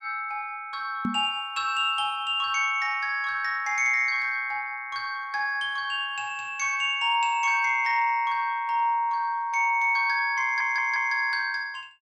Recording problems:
microphone thump; at 1 s; peak -1 dB vs average level
audio stuttering; at 10 s

